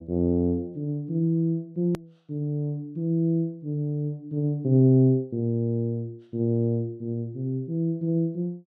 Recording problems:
hard cut with a click; at 2 s

